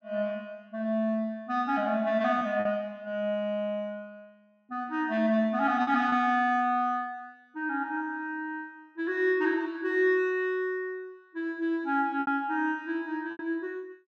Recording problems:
lost packets; 2% of the sound replaced, filled with repeated pitch periods

